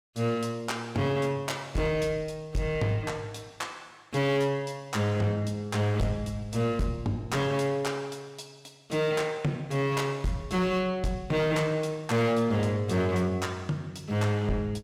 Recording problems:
distortion; hard clipping, signal-to-distortion ratio 11 dB

